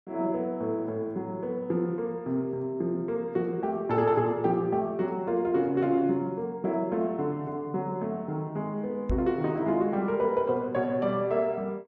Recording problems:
knock on the microphone; at 9 s; peak +2 dB vs average level

